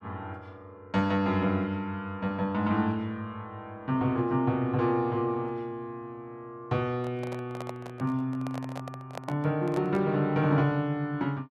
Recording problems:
microphone handling noise; from 7 to 10 s; peak -5 dB vs average level

